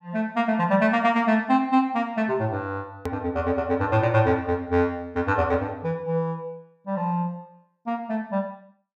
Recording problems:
click at an edit; at 3 s

